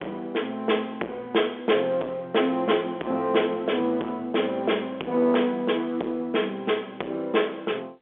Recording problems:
telephone audio; 280 Hz to 3.5 kHz, G.711
distortion; soft clipping, signal-to-distortion ratio 9 dB

